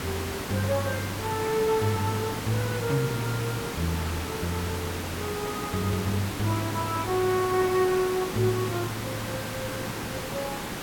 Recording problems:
hiss; slope -4 dB per octave, SNR 4 dB

